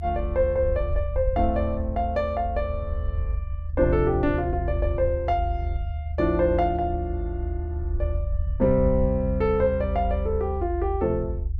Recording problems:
rumble; below 76 Hz, SNR 4 dB

